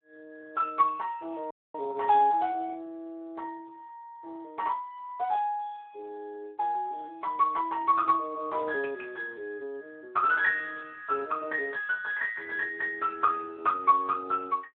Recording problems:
phone line; 340 Hz to 3.3 kHz, Speex
audio cutting out; at 1.5 s

